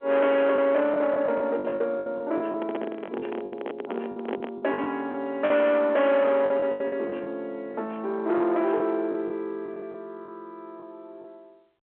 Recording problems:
telephone audio; 300 Hz to 3.6 kHz, G.711
distortion; soft clipping, signal-to-distortion ratio 10 dB
packet loss; 10% of the sound replaced, filled with the last packet
microphone handling noise; from 2.5 to 4.5 s; peak -2 dB vs average level

